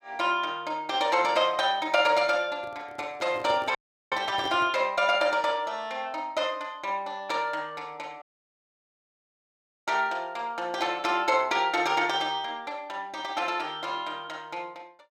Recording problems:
microphone handling noise; from 2.5 to 5 s; peak -8 dB vs average level
dropout; at 4 s and at 8 s for 1.5 s

